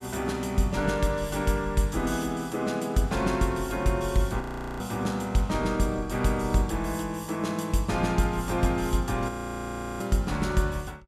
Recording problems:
frozen audio; at 4.5 s and at 9.5 s for 0.5 s

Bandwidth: 14.5 kHz